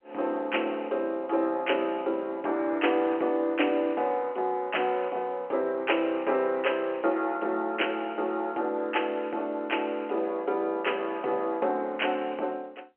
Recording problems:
phone line; 260 Hz to 3.1 kHz, G.711

